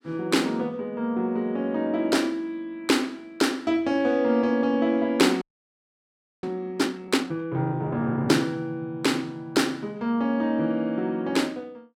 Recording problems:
audio freezing; at 5.5 s for 1 s

